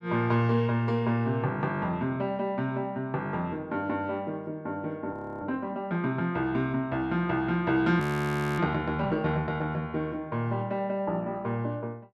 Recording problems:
frozen audio; at 5 s and at 8 s for 0.5 s

